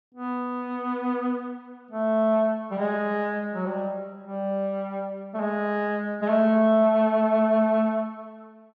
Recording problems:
low-pass filter; nothing above 8 kHz

